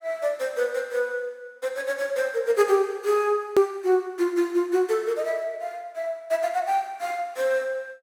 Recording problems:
edit click; at 3.5 s

